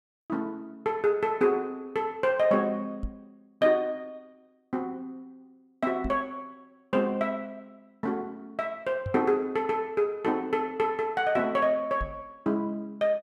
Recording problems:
microphone thump; 4 times, first at 3 s; peak -3 dB vs average level

